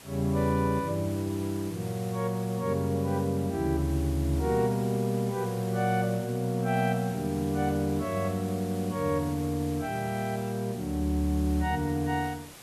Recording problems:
hiss; slope -2 dB per octave, SNR 17 dB

